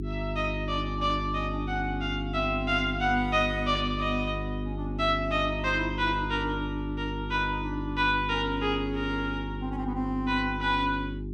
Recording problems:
hum; 50 Hz, harmonics up to 400 Hz, SNR 6 dB

